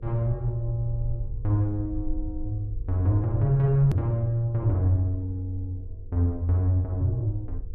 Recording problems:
electrical hum; 50 Hz, harmonics up to 500 Hz, SNR 29 dB
rumble; below 58 Hz, SNR 12 dB
hard cut with a click; at 4 s

